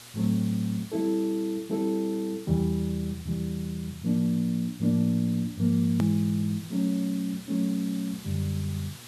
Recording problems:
hum; 60 Hz, harmonics up to 840 Hz, SNR 27 dB
background hiss; slope +1 dB per octave, SNR 19 dB
hard cut with a click; at 6 s

